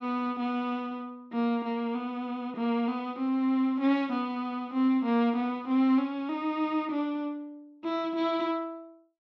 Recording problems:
none

